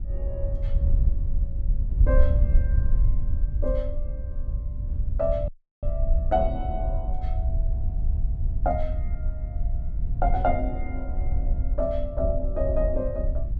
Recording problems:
wind on the microphone; below 64 Hz, SNR -3 dB
audio cutting out; at 5.5 s

